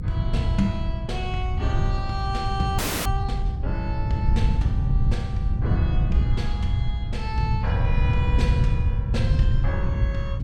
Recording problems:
hum; 50 Hz, harmonics up to 500 Hz, SNR 11 dB
low-frequency rumble; below 58 Hz, strongest tone 56 Hz, SNR 4 dB
wind on the microphone; below 120 Hz, SNR -5 dB
audio freezing; at 3 s

